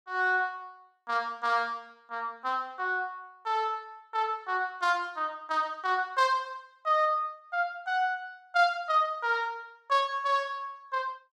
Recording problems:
none

